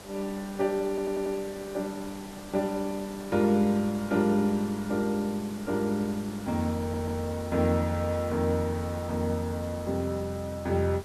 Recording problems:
background hiss; slope -4 dB per octave, SNR 16 dB
stutter; at 1 s and at 7 s

